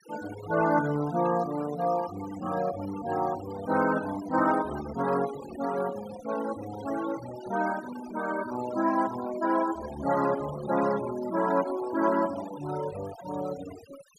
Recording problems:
denoising artefacts; signal-to-artefact ratio 14 dB

